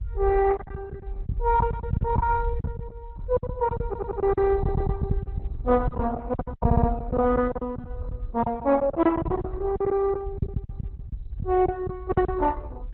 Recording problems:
codec artefacts; Opus, log-spectral distance 2 dB
rumble; below 110 Hz, SNR 6 dB
packet loss; 15% of the sound replaced, filled with silence
stutter; at 4 s, at 4.5 s and at 6.5 s

